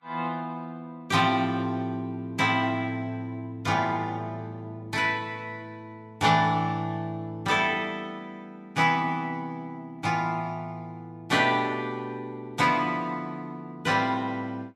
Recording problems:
lossy codec; Vorbis, log-spectral distance 2 dB, nothing above 13.8 kHz

